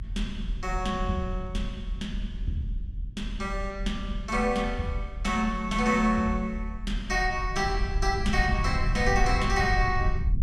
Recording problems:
rumble; below 66 Hz, strongest tone 40 Hz, SNR 5 dB

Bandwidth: 13 kHz